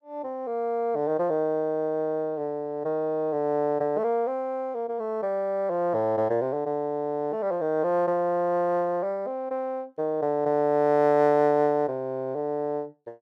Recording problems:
none

